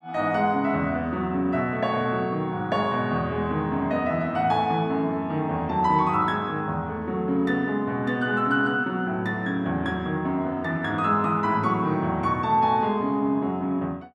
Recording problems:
none

